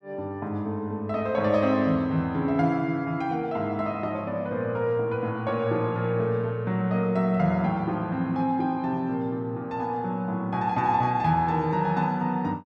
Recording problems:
none

